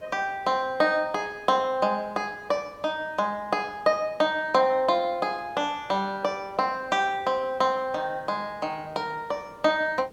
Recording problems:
hiss; SNR 26 dB

